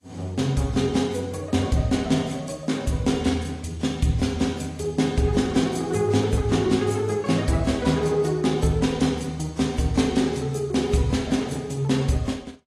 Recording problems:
lossy compression; AAC, log-spectral distance 3 dB, nothing above 11.6 kHz

